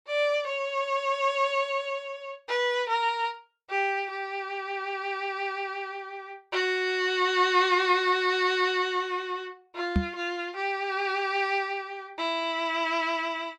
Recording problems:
knock on the microphone; at 10 s; peak +6 dB vs average level

